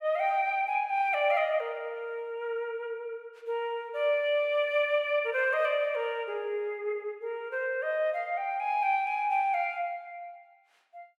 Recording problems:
none

